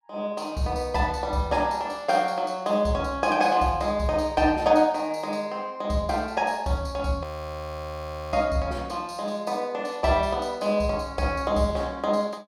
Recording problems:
audio freezing; at 7 s for 1 s

